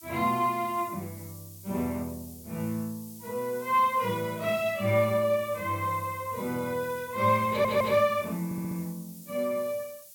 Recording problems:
background hiss; SNR 18 dB
audio stuttering; at 7.5 s and at 8.5 s

